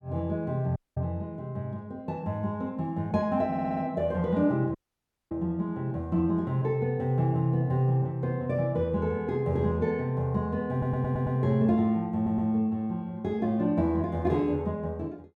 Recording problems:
dropout; at 1 s and at 5 s for 0.5 s
audio stuttering; at 3.5 s, at 11 s and at 12 s

